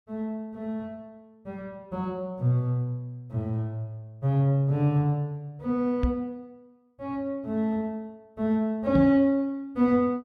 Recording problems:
microphone thump; at 6 s and at 9 s; peak +4 dB vs average level

